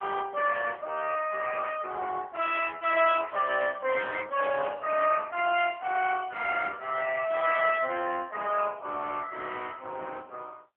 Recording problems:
telephone audio; 260 Hz to 3.3 kHz, AMR-NB

